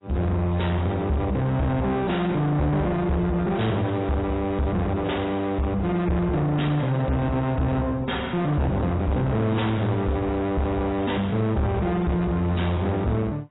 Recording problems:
lossy compression; AAC, log-spectral distance 2 dB, nothing above 3.8 kHz
distorted audio; soft clipping, signal-to-distortion ratio 6 dB

